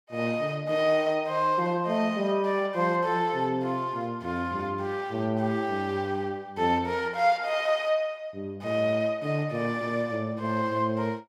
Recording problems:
none

